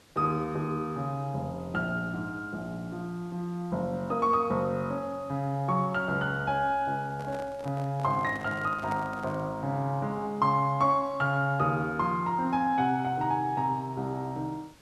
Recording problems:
background hiss; slope -3 dB per octave, SNR 27 dB
microphone handling noise; from 7 to 9.5 s; peak -6 dB vs average level

